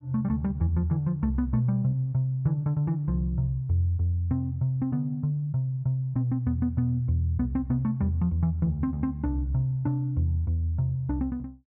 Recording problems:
none

